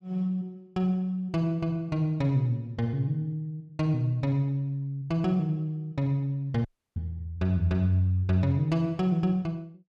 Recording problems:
audio cutting out; at 6.5 s

